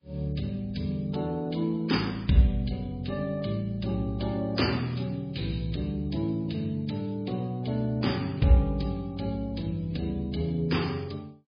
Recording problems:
lossy compression; AAC, then MP3, log-spectral distance 5 dB, nothing above 5 kHz

